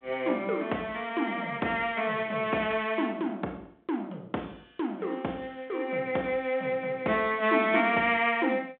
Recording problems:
telephone audio; 240 Hz to 3.5 kHz, G.726

